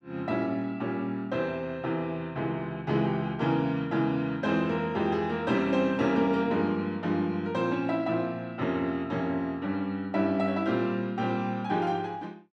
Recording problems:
none

